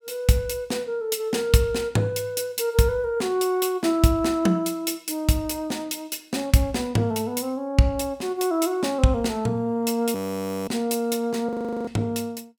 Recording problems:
frozen audio; at 10 s for 0.5 s and at 11 s

